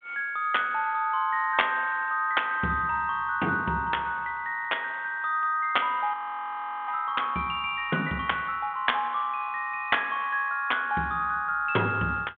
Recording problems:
phone line; 170 Hz to 3.6 kHz, G.726
audio freezing; at 6 s for 0.5 s

